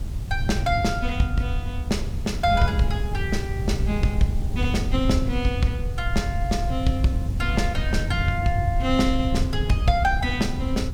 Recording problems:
hiss; SNR 20 dB
rumble; below 84 Hz, SNR 7 dB
wind noise; below 120 Hz, SNR 4 dB

